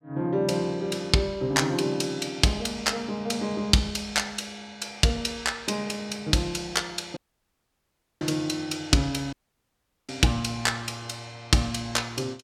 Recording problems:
dropout; at 7 s for 1 s and at 9.5 s for 1 s

